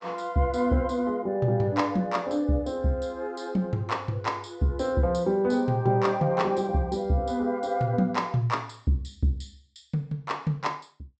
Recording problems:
treble cut off; nothing above 8 kHz

